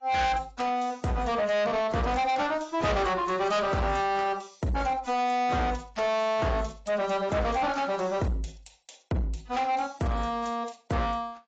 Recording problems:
lossy compression; AAC, log-spectral distance 4 dB, nothing above 7.6 kHz
distortion; soft clipping, signal-to-distortion ratio 6 dB

